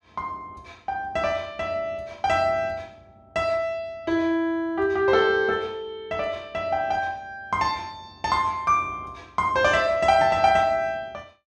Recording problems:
none

